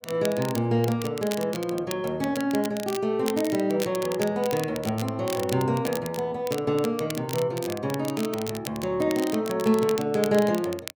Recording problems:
crackle; vinyl, SNR 12 dB

